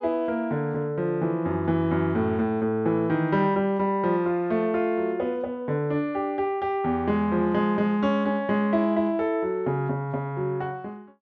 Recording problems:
none

